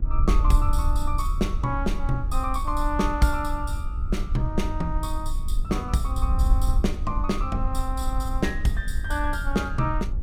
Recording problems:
electrical hum; 50 Hz, harmonics up to 1.4 kHz, SNR 19 dB
wind on the microphone; below 56 Hz, SNR 0 dB

